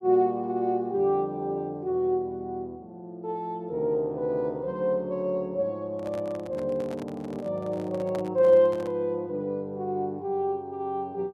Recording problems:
microphone handling noise; from 6 to 9 s; peak -8 dB vs average level

